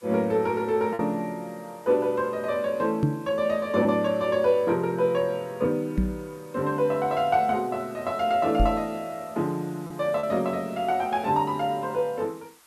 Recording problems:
hiss; SNR 27 dB
lost packets; 1.2% of the sound replaced, filled with repeated pitch periods
knock on the microphone; at 3 s, at 6 s and at 8.5 s; peak +5 dB vs average level

